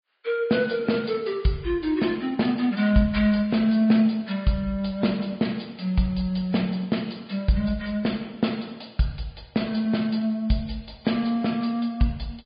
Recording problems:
low-pass filter; nothing above 4.9 kHz
lossy codec; MP3, log-spectral distance 3 dB

